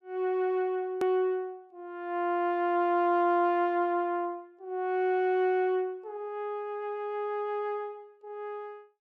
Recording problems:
click at an edit; at 1 s

